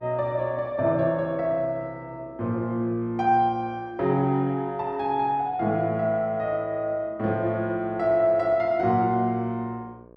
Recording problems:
mains hum; 60 Hz, harmonics up to 1.3 kHz, SNR 27 dB

